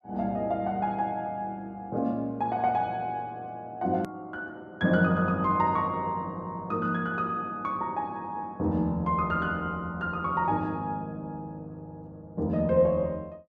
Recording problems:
hard cut with a click; at 4 s

